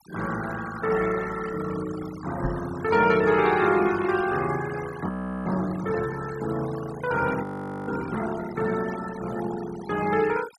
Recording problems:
denoising artefacts; signal-to-artefact ratio 14 dB
knock on the microphone; at 2.5 s; peak +1 dB vs average level
frozen audio; at 5 s and at 7.5 s

